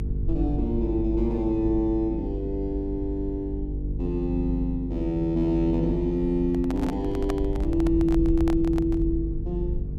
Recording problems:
hum; 50 Hz, harmonics up to 450 Hz, SNR 7 dB
rumble; below 74 Hz, SNR 9 dB
handling noise; from 6.5 to 9 s; peak -3 dB vs average level

